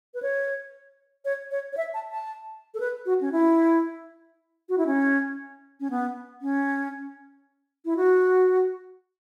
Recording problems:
none

